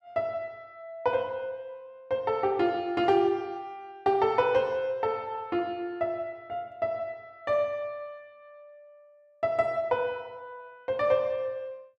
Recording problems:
none

